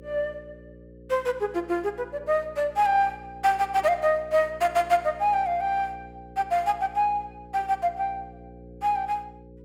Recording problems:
hum; 60 Hz, harmonics up to 540 Hz, SNR 21 dB

